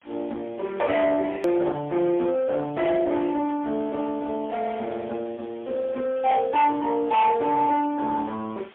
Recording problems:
telephone audio; 240 Hz to 3.1 kHz, AMR-NB, then MP3
distorted audio; hard clipping, signal-to-distortion ratio 12 dB
background hiss; SNR 27 dB
edit click; at 1.5 s

